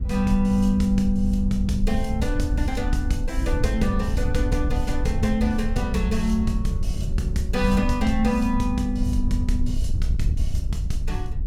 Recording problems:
wind noise; below 78 Hz, SNR 2 dB

